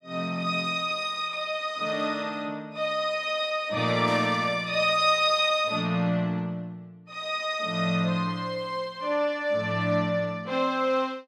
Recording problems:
burst of static; at 4 s; peak -10 dB vs average level

